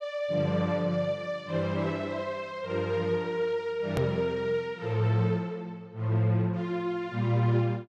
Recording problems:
click at an edit; at 4 s

